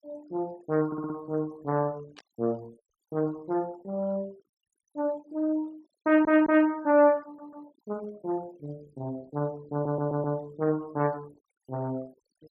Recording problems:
denoising artefacts; signal-to-artefact ratio 26 dB
audio stuttering; 4 times, first at 1 s
burst of static; at 2 s; peak -17 dB vs average level

